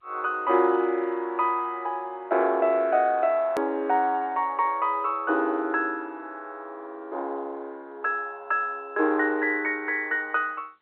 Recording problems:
phone line; 300 Hz to 3.3 kHz, G.711
edit click; at 3.5 s

